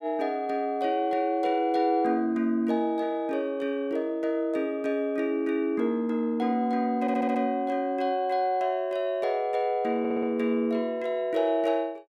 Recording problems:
stutter; at 7 s and at 10 s

